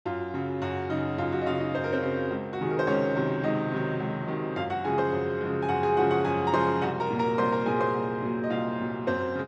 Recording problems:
none

